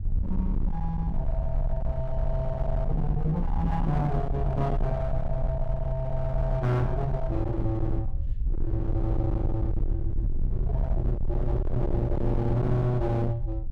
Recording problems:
distortion; hard clipping, signal-to-distortion ratio 8 dB
low-frequency rumble; below 72 Hz, SNR 2 dB

